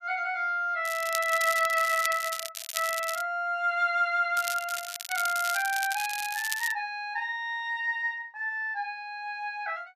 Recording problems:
crackling; from 1 to 3 s and from 4.5 to 6.5 s; loose cable, SNR 7 dB

